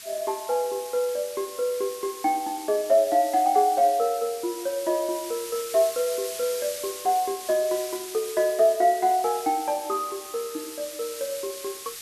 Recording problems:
hiss; SNR 12 dB

